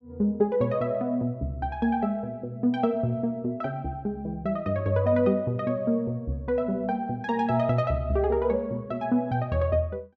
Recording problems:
none

